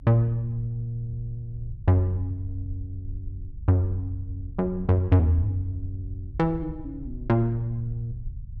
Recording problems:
low-frequency rumble; below 80 Hz, SNR 13 dB

